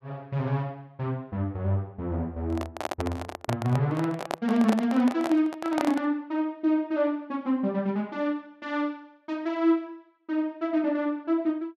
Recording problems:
microphone handling noise; from 2.5 to 6 s; peak +2 dB vs average level

